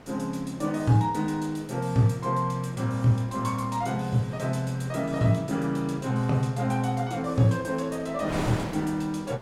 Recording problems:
wind noise; below 1.1 kHz, SNR 15 dB

